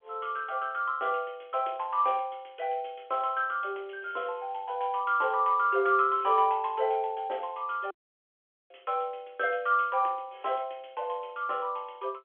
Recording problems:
phone line; 300 Hz to 3.4 kHz, G.711
dropout; at 8 s for 1 s

